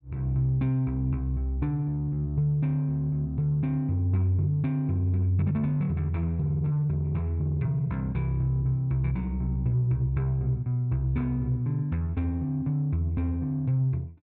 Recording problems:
none

